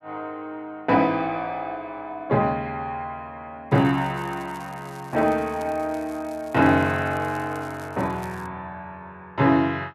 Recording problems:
crackle; from 3.5 to 8.5 s; loose cable, SNR 26 dB

